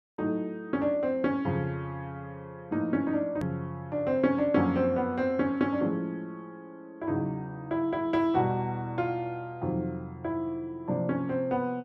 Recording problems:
edit click; at 3.5 s

